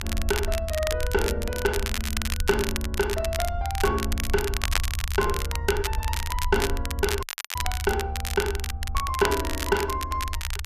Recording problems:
low-frequency rumble; below 78 Hz, SNR 4 dB
crackling; vinyl, SNR 4 dB
audio cutting out; at 7 s

